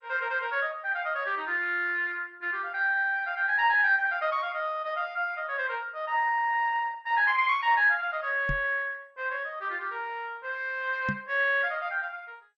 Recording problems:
lossy compression; MP2, then MP3, log-spectral distance 3 dB
knock on the microphone; at 8.5 s and at 11 s; peak -2 dB vs average level

